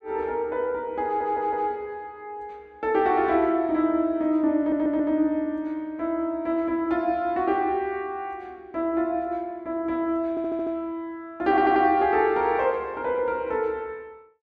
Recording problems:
stutter; 4 times, first at 1 s

